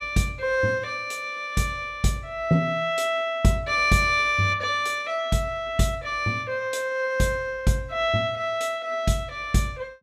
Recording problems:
none

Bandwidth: 14.5 kHz